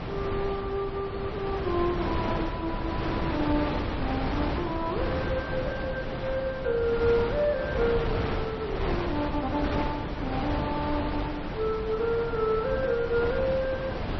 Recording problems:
codec artefacts; MP3, log-spectral distance 3 dB, nothing above 5.7 kHz
wind on the microphone; below 830 Hz, SNR 2 dB

